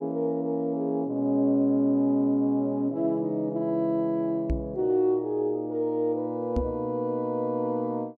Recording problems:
microphone bump; at 4.5 s and at 6.5 s; peak +2 dB vs average level

